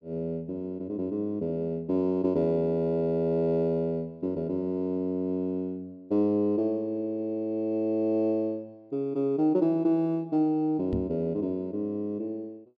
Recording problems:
microphone bump; at 11 s; peak +1 dB vs average level

